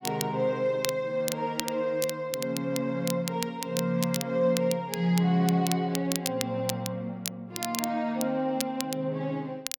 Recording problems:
crackle; vinyl, SNR 8 dB

